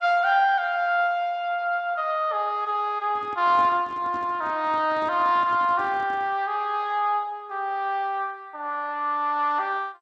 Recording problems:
lossy codec; MP2, log-spectral distance 2 dB
microphone handling noise; from 3 to 6.5 s; peak -10 dB vs average level

